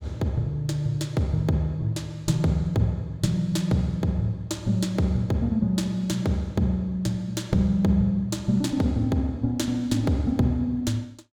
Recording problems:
none

